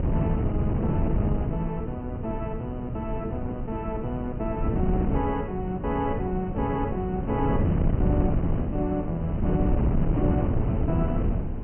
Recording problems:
treble cut off; nothing above 3 kHz
wind noise; below 220 Hz, SNR -2 dB

